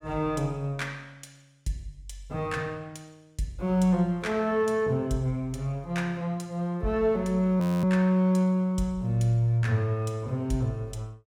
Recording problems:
audio freezing; at 7.5 s

